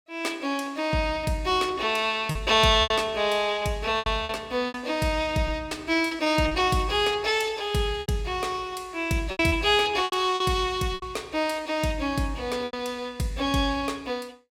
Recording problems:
lost packets; 7% of the sound replaced, filled with repeated pitch periods

